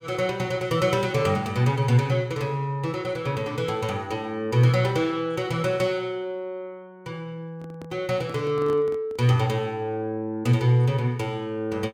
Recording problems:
handling noise; from 7.5 to 9.5 s; peak -9 dB vs average level

